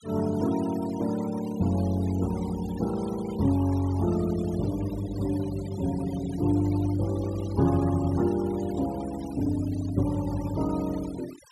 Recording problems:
denoising artefacts; signal-to-artefact ratio 17 dB

